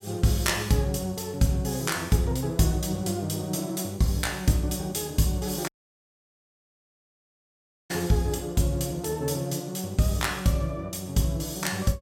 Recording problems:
dropout; at 5.5 s for 2 s

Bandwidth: 16.5 kHz